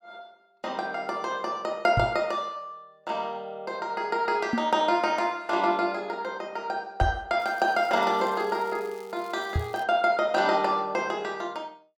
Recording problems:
microphone thump; 4 times, first at 2 s; peak +4 dB vs average level
crackling; from 7.5 to 10 s; loose cable, SNR 26 dB

